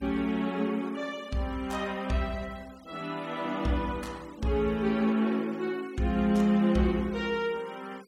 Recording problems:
noise reduction artefacts; signal-to-artefact ratio 24 dB

